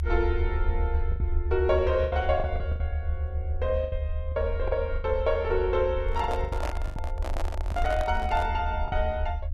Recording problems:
low-frequency rumble; below 76 Hz, SNR 3 dB
packet loss; 10% of the sound replaced, filled with the last packet
microphone handling noise; from 6 to 8.5 s; peak -1 dB vs average level

